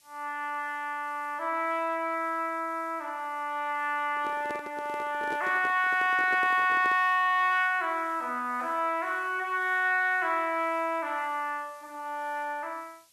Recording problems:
hiss; SNR 29 dB
microphone handling noise; from 4 to 7 s; peak -7 dB vs average level

